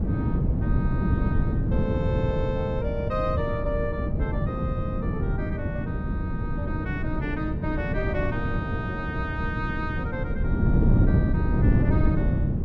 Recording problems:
wind noise; below 190 Hz, SNR -6 dB

